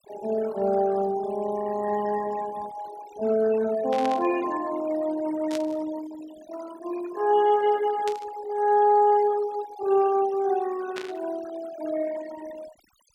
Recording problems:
noise reduction artefacts; signal-to-artefact ratio 18 dB
static burst; 4 times, first at 4 s; peak -6 dB vs average level

